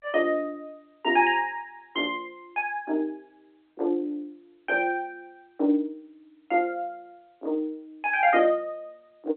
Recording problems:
telephone audio; 260 Hz to 3.5 kHz, G.711

